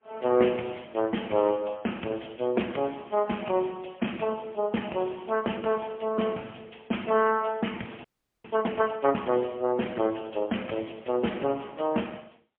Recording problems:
phone line; 190 Hz to 3.3 kHz, AMR-NB, then MP3
audio freezing; at 8 s

